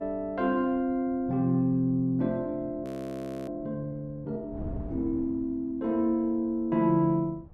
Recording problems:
wind on the microphone; below 180 Hz, SNR 18 dB
audio freezing; at 3 s for 0.5 s

